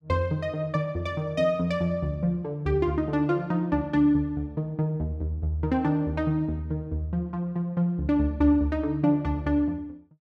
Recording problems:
none

